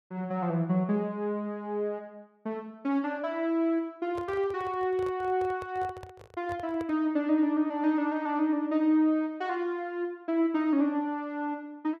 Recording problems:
handling noise; from 4 to 7 s; peak -9 dB vs average level

